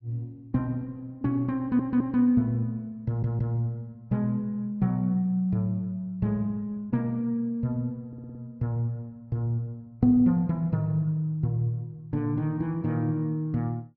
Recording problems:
audio stuttering; at 1.5 s, at 3 s and at 8 s

